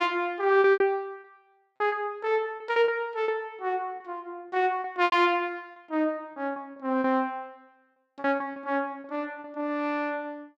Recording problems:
packet loss; 11% of the sound replaced, filled with repeated pitch periods

